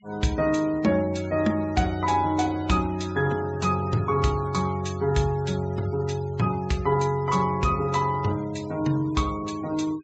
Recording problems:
treble missing; nothing above 8 kHz
denoising artefacts; signal-to-artefact ratio 21 dB

